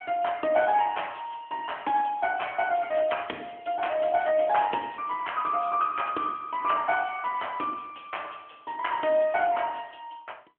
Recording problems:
phone line; 240 Hz to 3.3 kHz, AMR-NB

